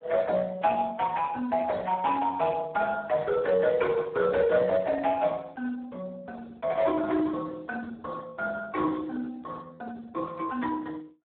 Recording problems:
phone line; 240 Hz to 2.2 kHz, Speex

